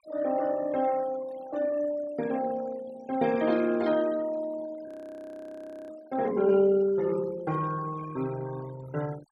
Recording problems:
noise reduction artefacts; signal-to-artefact ratio 19 dB
frozen audio; at 5 s for 1 s

